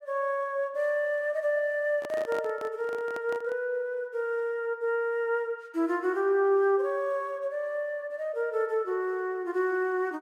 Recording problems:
microphone handling noise; from 2 to 3.5 s; peak -7 dB vs average level

